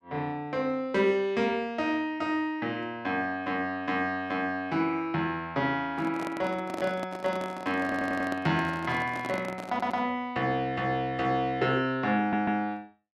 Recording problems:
microphone handling noise; from 6 to 10 s; peak -4 dB vs average level
audio stuttering; at 8 s, at 9.5 s and at 12 s

